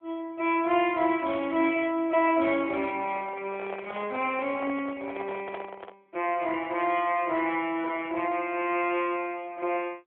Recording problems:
phone line; 280 Hz to 3.5 kHz, AMR-NB
handling noise; from 3 to 6 s; peak -5 dB vs average level

